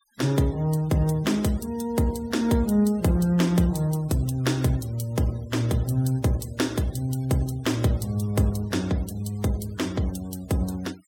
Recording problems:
noise reduction artefacts; signal-to-artefact ratio 23 dB

